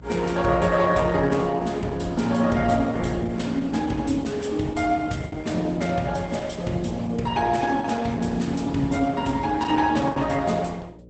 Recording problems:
codec artefacts; Opus, log-spectral distance 4 dB, nothing above 8 kHz
hum; 60 Hz, harmonics up to 600 Hz, SNR 20 dB
packet loss; 2% of the sound replaced, filled with the last packet

